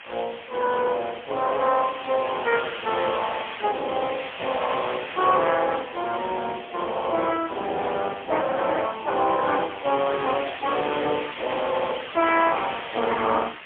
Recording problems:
phone line; 300 Hz to 3.3 kHz, AMR-NB, then MP3
hiss; SNR 12 dB

